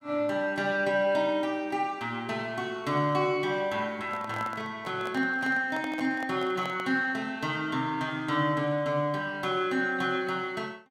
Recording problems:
microphone handling noise; from 4 to 7 s; peak -6 dB vs average level

